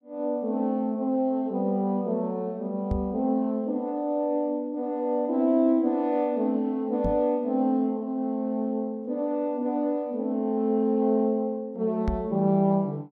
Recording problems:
microphone thump; at 3 s, at 7 s and at 12 s; peak +1 dB vs average level

